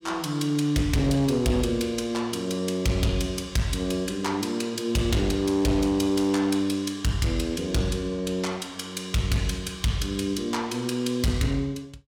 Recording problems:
distorted audio; hard clipping, signal-to-distortion ratio 11 dB

